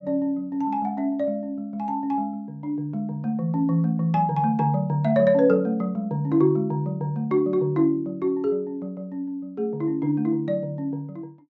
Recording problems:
low-pass filter; nothing above 8 kHz

